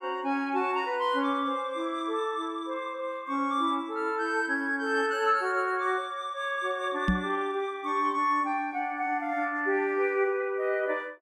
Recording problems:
knock on the microphone; at 7 s; peak +6 dB vs average level

